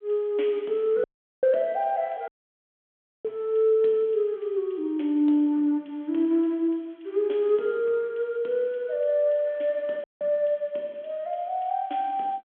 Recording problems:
phone line; 240 Hz to 3.6 kHz, G.726
audio cutting out; at 1 s, at 2.5 s for 1 s and at 10 s

